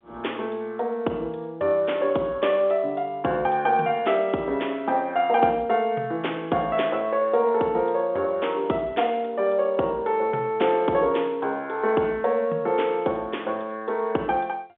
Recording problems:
phone line; 300 Hz to 3.5 kHz, G.711

